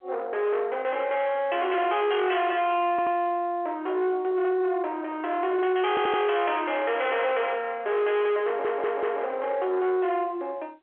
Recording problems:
telephone audio; 320 Hz to 3.6 kHz, G.711
distorted audio; soft clipping, signal-to-distortion ratio 7 dB
audio stuttering; at 3 s, at 6 s and at 8.5 s

